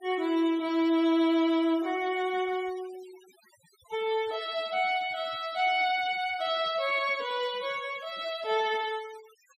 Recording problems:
noise reduction artefacts; signal-to-artefact ratio 21 dB

